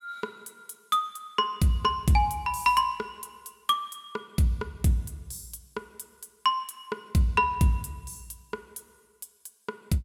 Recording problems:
none

